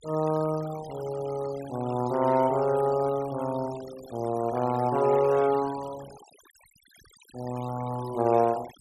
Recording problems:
noise reduction artefacts; signal-to-artefact ratio 19 dB

